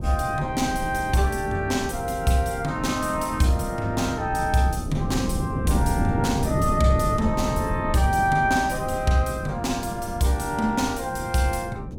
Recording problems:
wind noise; below 250 Hz, SNR 6 dB

